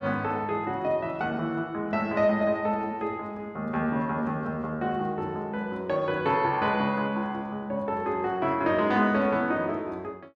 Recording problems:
none

